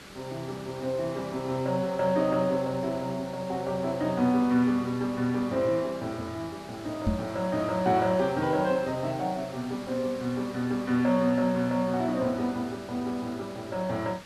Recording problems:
background hiss; slope -2 dB per octave, SNR 17 dB
microphone thump; at 7 s; peak +5 dB vs average level

